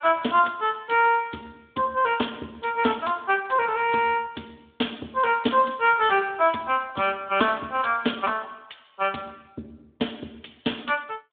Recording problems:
phone line; 260 Hz to 3.6 kHz, Speex

